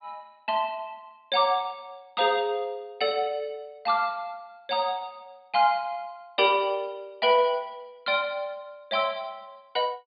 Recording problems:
treble missing; nothing above 4.7 kHz

